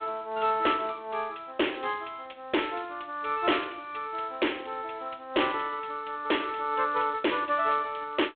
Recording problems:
phone line; 280 Hz to 3.4 kHz, G.726
distorted audio; hard clipping, signal-to-distortion ratio 11 dB

